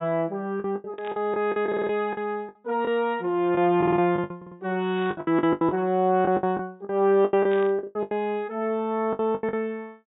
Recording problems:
low-pass filter; nothing above 4 kHz
lost packets; 15% of the sound replaced, filled with the last packet
burst of static; at 1 s, at 5 s and at 7.5 s; peak -12 dB vs average level
stutter; at 1.5 s, at 4 s and at 4.5 s

